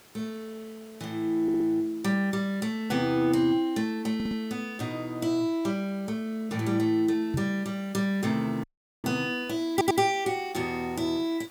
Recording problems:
hiss; slope -3 dB per octave, SNR 26 dB
stutter; at 1.5 s, at 4 s and at 9.5 s
microphone bump; at 7.5 s; peak +1 dB vs average level
audio cutting out; at 8.5 s

